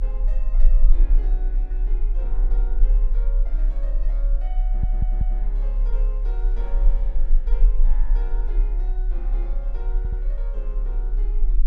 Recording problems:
low-frequency rumble; below 36 Hz, strongest tone 34 Hz, SNR -19 dB
wind on the microphone; below 1.5 kHz, SNR 19 dB
stutter; at 4.5 s and at 10 s

